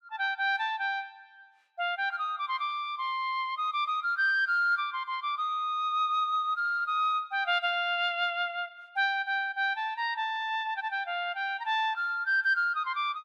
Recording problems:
none

